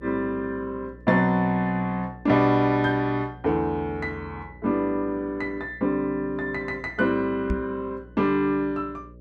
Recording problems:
hum; 60 Hz, harmonics up to 600 Hz, SNR 22 dB
knock on the microphone; at 7.5 s; peak +1 dB vs average level

